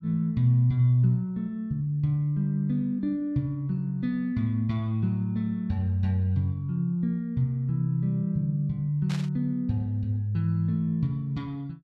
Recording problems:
static burst; at 9 s; peak -9 dB vs average level

